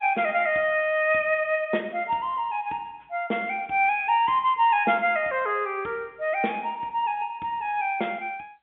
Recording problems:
phone line; 220 Hz to 3.6 kHz, G.711

